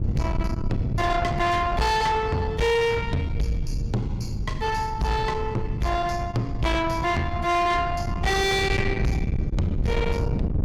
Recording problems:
distorted audio; soft clipping, signal-to-distortion ratio 7 dB
wind noise; below 210 Hz, SNR 4 dB

